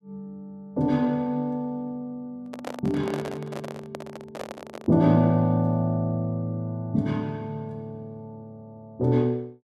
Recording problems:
microphone handling noise; from 2.5 to 5 s; peak -4 dB vs average level

